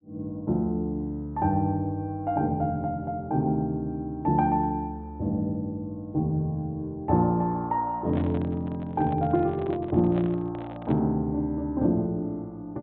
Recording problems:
treble cut off; nothing above 4 kHz
microphone handling noise; from 8 to 11 s; peak -7 dB vs average level

